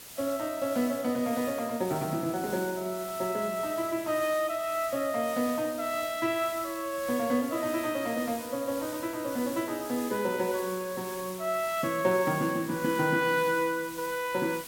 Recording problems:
hiss; slope -1 dB per octave, SNR 12 dB

